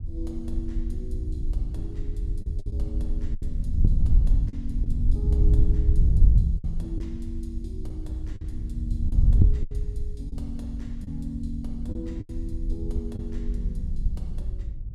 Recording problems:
wind noise; below 70 Hz, SNR -10 dB
packet loss; 5% of the sound replaced, filled with the last packet

